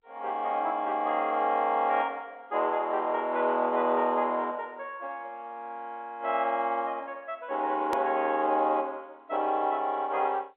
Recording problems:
phone line; 240 Hz to 3.5 kHz, G.711
edit click; at 8 s

